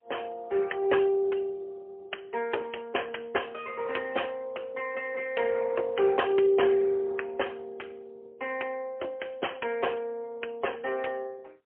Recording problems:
telephone audio; 300 Hz to 3.1 kHz, AMR-NB, then MP3

